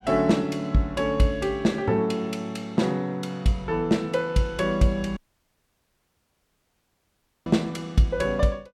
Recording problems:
audio cutting out; at 5 s for 2.5 s

